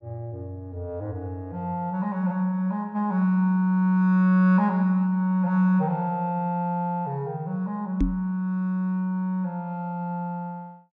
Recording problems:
microphone thump; at 8 s; peak +4 dB vs average level

